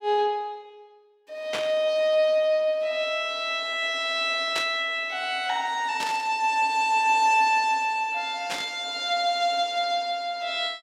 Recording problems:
burst of static; 4 times, first at 1.5 s; peak -2 dB vs average level

